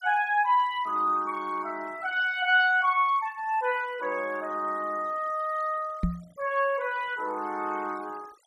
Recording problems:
denoising artefacts; signal-to-artefact ratio 25 dB
microphone thump; at 6 s; peak +3 dB vs average level

